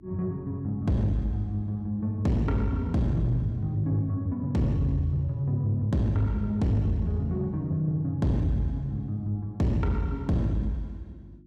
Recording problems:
distorted audio; soft clipping, signal-to-distortion ratio 11 dB
hum; 50 Hz, harmonics up to 350 Hz, SNR 26 dB

